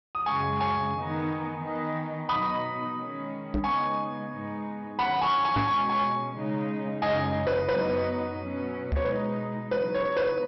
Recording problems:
treble cut off; nothing above 5.7 kHz
distorted audio; hard clipping, signal-to-distortion ratio 12 dB
microphone thump; at 3.5 s, at 5.5 s and at 9 s; peak +5 dB vs average level

